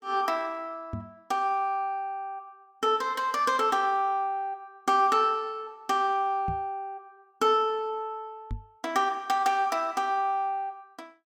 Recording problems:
microphone thump; at 1 s, at 6.5 s and at 8.5 s; peak -4 dB vs average level

